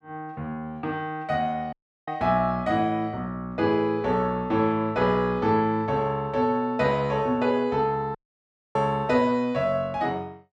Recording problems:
dropout; at 1.5 s and at 8 s for 0.5 s

